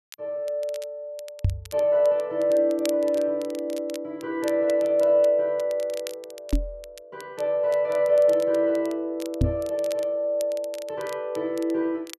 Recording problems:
crackling; vinyl, SNR 21 dB
microphone bump; at 1.5 s, at 6.5 s and at 9.5 s; peak +5 dB vs average level

